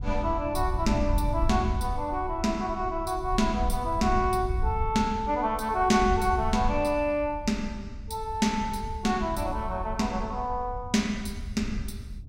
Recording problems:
wind noise; below 80 Hz, SNR 7 dB

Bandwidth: 16.5 kHz